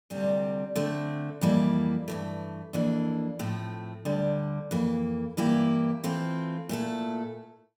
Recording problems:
none

